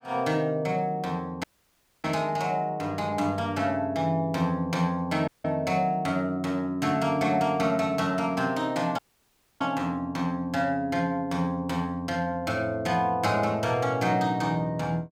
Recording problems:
audio cutting out; at 1.5 s for 0.5 s, at 5.5 s and at 9 s for 0.5 s

